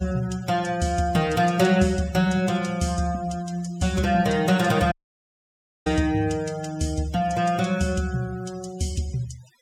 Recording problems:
noise reduction artefacts; signal-to-artefact ratio 21 dB
dropout; at 5 s for 1 s

